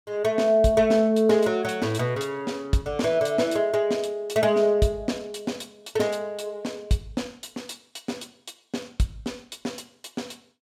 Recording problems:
none

